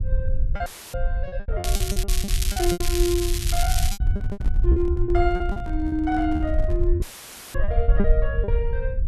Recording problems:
low-frequency rumble; below 68 Hz, SNR -2 dB
packet loss; 14% of the sound replaced, filled with repeated pitch periods
dropout; at 0.5 s and at 7 s for 0.5 s; filled with static
crackle; from 1.5 to 4 s; loose cable, SNR 2 dB
handling noise; from 4 to 7 s; peak -6 dB vs average level

